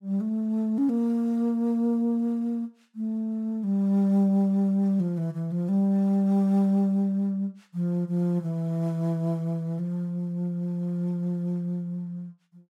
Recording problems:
none

